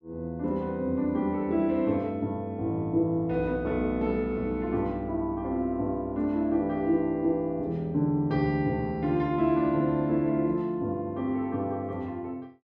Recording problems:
none

